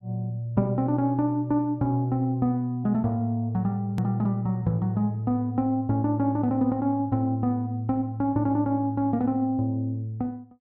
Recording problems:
edit click; at 4 s

